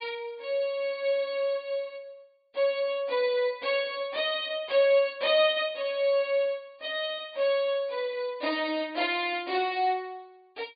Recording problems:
treble missing; nothing above 4.8 kHz

